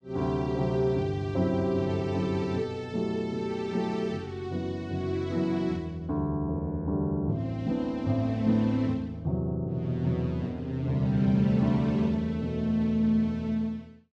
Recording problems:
none

